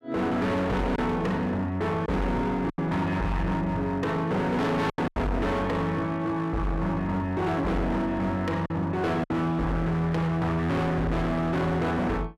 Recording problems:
distortion; hard clipping, signal-to-distortion ratio 6 dB
lost packets; 3% of the sound replaced, filled with silence

